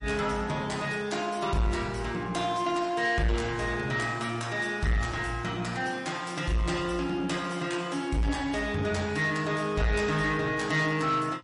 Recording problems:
lossy compression; MP3, log-spectral distance 3 dB, nothing above 10.4 kHz
distortion; soft clipping, signal-to-distortion ratio 10 dB

